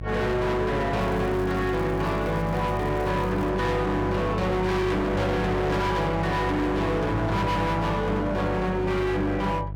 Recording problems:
distorted audio; hard clipping, signal-to-distortion ratio 7 dB
hum; 50 Hz, harmonics up to 650 Hz, SNR 8 dB
crackling; from 1 to 3.5 s; loose cable, SNR 28 dB

